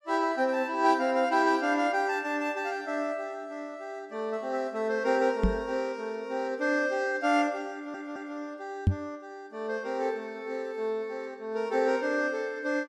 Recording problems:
microphone bump; at 5.5 s and at 9 s; peak +9 dB vs average level
audio stuttering; at 7.5 s

